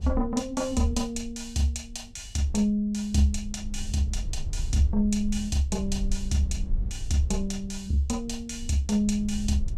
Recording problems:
rumble; below 60 Hz, SNR 9 dB

